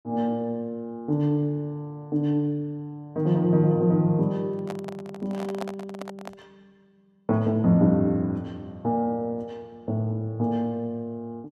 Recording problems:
handling noise; from 4.5 to 6.5 s; peak -3 dB vs average level

